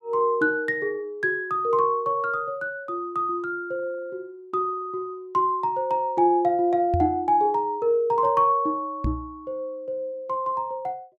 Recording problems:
microphone thump; at 7 s and at 9 s; peak +2 dB vs average level

